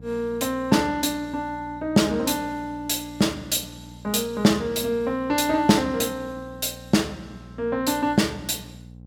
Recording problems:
hum; 60 Hz, harmonics up to 540 Hz, SNR 20 dB

